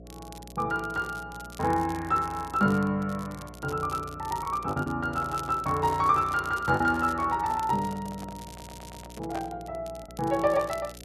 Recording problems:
electrical hum; 60 Hz, harmonics up to 720 Hz, SNR 19 dB
crackle; vinyl, SNR 20 dB
packet loss; 1.8% of the sound replaced, filled with the last packet
microphone handling noise; from 5 to 9.5 s; peak -6 dB vs average level
audio stuttering; at 8.5 s

